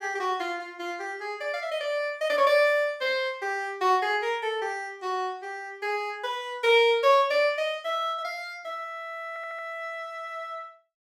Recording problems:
audio stuttering; at 9.5 s

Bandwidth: 16 kHz